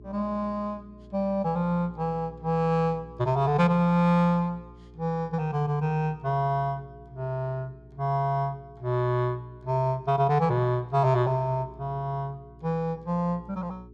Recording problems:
hum; 60 Hz, harmonics up to 420 Hz, SNR 22 dB

